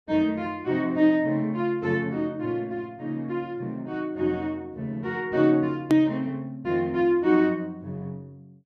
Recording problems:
click at an edit; at 6 s

